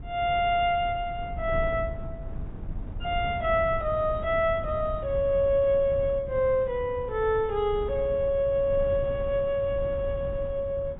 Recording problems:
low-pass filter; nothing above 4 kHz
wind noise; below 120 Hz, SNR 12 dB

